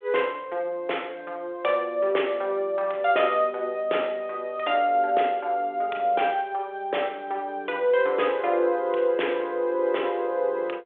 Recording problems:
telephone audio; 340 Hz to 3.5 kHz, G.726

